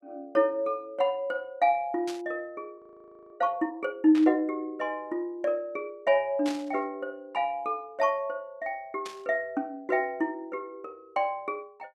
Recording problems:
burst of static; 4 times, first at 2 s; peak -5 dB vs average level
frozen audio; at 3 s for 0.5 s

